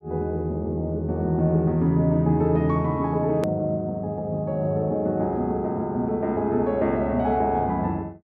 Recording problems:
hard cut with a click; at 3.5 s

